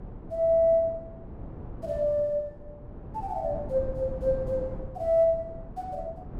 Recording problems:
wind on the microphone; below 260 Hz, SNR 14 dB

